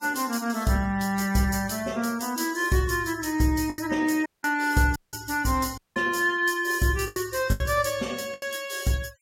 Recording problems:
denoising artefacts; signal-to-artefact ratio 20 dB
packet loss; 5% of the sound replaced, filled with the last packet
audio cutting out; at 4.5 s, at 5 s and at 6 s

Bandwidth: 16.5 kHz